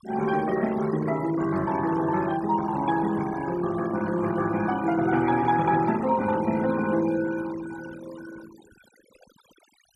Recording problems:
denoising artefacts; signal-to-artefact ratio 16 dB

